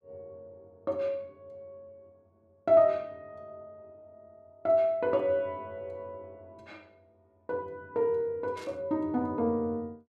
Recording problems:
static burst; at 8.5 s; peak -17 dB vs average level

